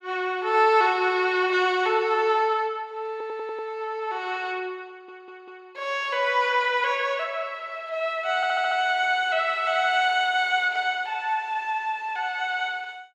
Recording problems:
audio stuttering; at 3 s, at 5 s and at 8.5 s

